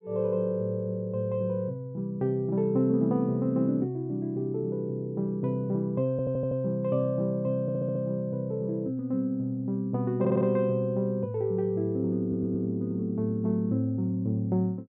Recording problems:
treble missing; nothing above 4 kHz
audio stuttering; 4 times, first at 6 s

